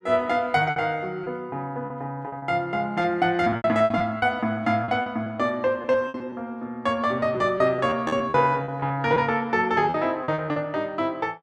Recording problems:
packet loss; 11% of the sound replaced, filled with repeated pitch periods

